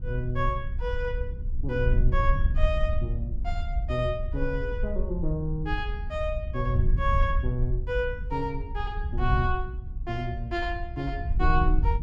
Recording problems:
wind noise; below 66 Hz, SNR 0 dB

